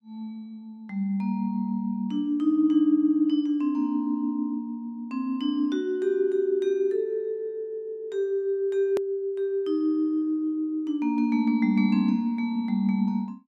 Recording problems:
click at an edit; at 9 s

